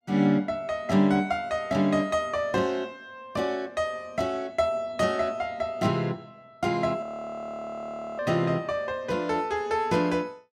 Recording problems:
audio freezing; at 7 s for 1 s

